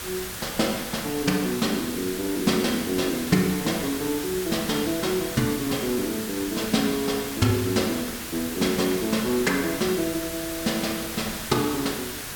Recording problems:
background hiss; slope -1 dB per octave, SNR 6 dB

